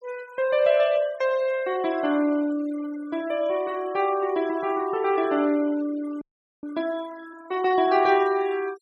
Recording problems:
denoising artefacts; signal-to-artefact ratio 20 dB
frozen audio; at 6 s

